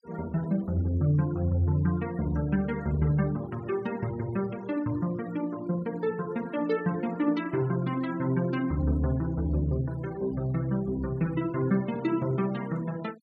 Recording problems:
denoising artefacts; signal-to-artefact ratio 22 dB

